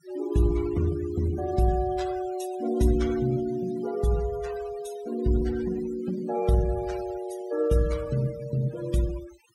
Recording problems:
noise reduction artefacts; signal-to-artefact ratio 16 dB

